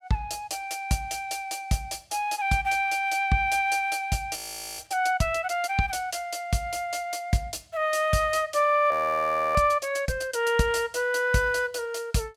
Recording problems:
audio freezing; at 4.5 s and at 9 s for 0.5 s

